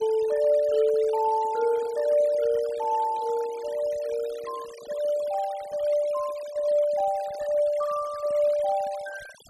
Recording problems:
denoising artefacts; signal-to-artefact ratio 20 dB

